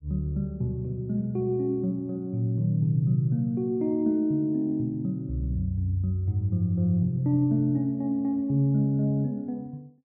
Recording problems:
none

